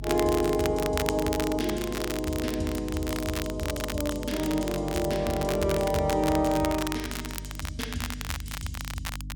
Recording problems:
electrical hum; 50 Hz, harmonics up to 300 Hz, SNR 11 dB
crackle; vinyl, SNR 8 dB

